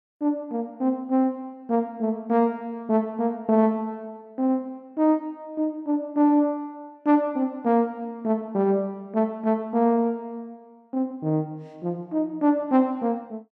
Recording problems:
none

